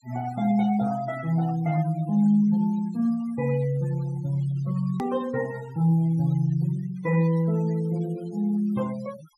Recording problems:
denoising artefacts; signal-to-artefact ratio 22 dB
hard cut with a click; at 5 s

